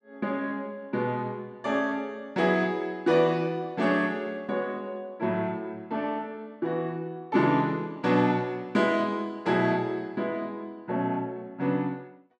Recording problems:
none

